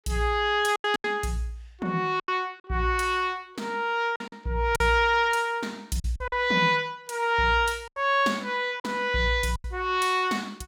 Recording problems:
packet loss; 7% of the sound replaced, filled with silence

